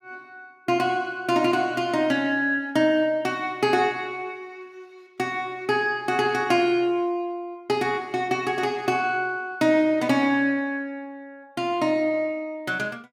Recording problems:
none

